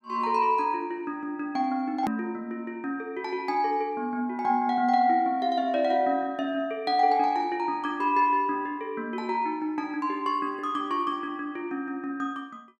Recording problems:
click at an edit; at 2 s

